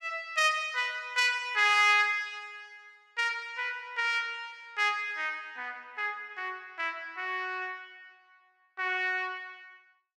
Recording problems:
none

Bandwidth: 15 kHz